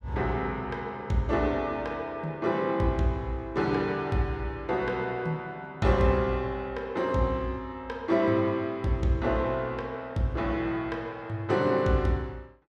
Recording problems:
none

